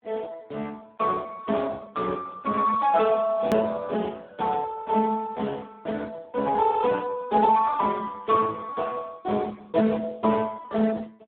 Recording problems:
phone line; 150 Hz to 2 kHz, Speex
click at an edit; at 3.5 s

